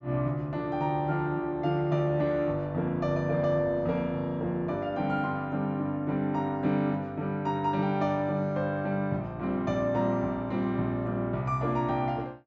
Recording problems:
treble missing; nothing above 7.5 kHz

